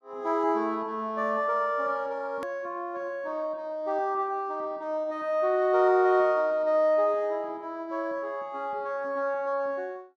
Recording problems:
hard cut with a click; at 2.5 s

